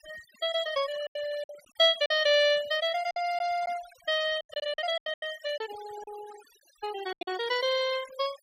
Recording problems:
noise reduction artefacts; signal-to-artefact ratio 16 dB
packet loss; 10% of the sound replaced, filled with silence

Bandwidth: 15.5 kHz